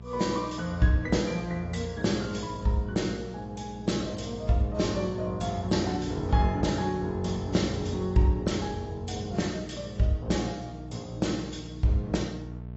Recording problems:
lossy compression; AAC, log-spectral distance 4 dB, nothing above 7.6 kHz
hum; 60 Hz, harmonics up to 840 Hz, SNR 13 dB

